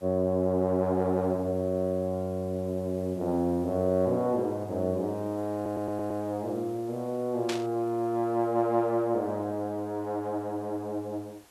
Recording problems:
background hiss; slope -3 dB per octave, SNR 27 dB
stutter; at 5.5 s
static burst; at 7.5 s; peak -1 dB vs average level

